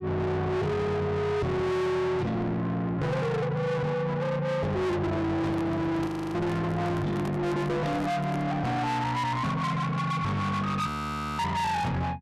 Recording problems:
distorted audio; soft clipping, signal-to-distortion ratio 6 dB
microphone handling noise; from 5.5 to 8.5 s; peak -2 dB vs average level
audio freezing; at 6 s and at 11 s for 0.5 s

